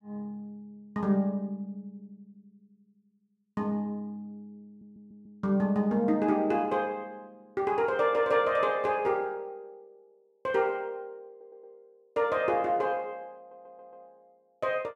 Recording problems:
stutter; at 4.5 s, at 11 s and at 13 s

